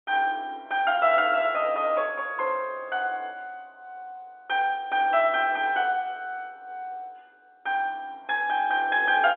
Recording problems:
telephone audio; 240 Hz to 3.8 kHz, G.711

